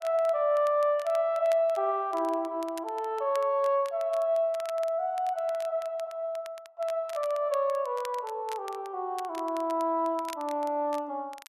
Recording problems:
crackling; vinyl, SNR 22 dB

